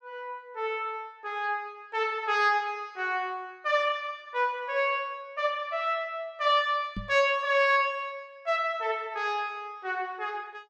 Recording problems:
knock on the microphone; at 7 s; peak -4 dB vs average level

